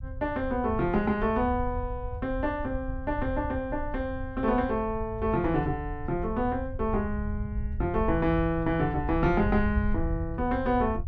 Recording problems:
rumble; below 90 Hz, SNR 7 dB

